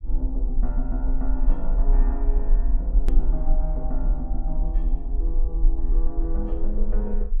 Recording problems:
rumble; below 40 Hz, SNR -9 dB
hard cut with a click; at 3 s

